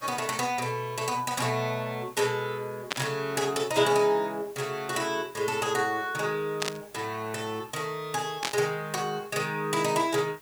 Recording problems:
background hiss; slope -2 dB per octave, SNR 23 dB
static burst; at 3 s, at 6.5 s and at 8.5 s; peak +4 dB vs average level

